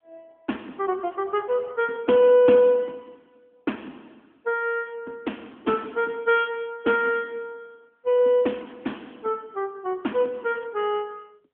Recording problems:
phone line; 220 Hz to 3.3 kHz, AMR-NB

